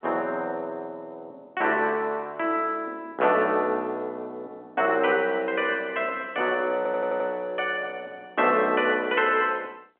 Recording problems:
phone line; 240 Hz to 3.4 kHz, G.711
audio stuttering; at 7 s

